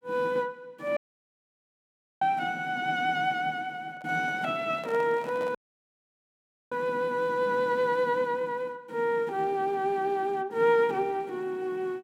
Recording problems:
dropout; at 1 s for 1 s and at 5.5 s for 1 s
handling noise; from 4 to 5.5 s; peak -10 dB vs average level

